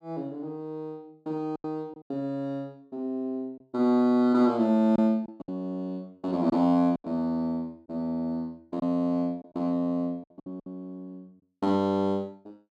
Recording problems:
packet loss; 5% of the sound replaced, filled with silence

